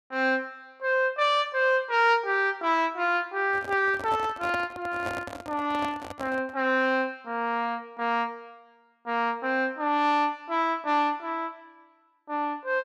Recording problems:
microphone handling noise; from 3.5 to 6.5 s; peak -5 dB vs average level

